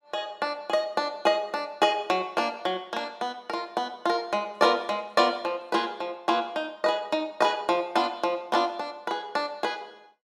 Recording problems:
none

